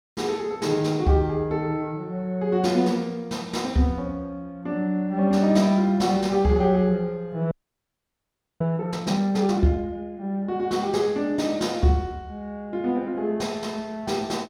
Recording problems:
frozen audio; at 7.5 s for 1 s

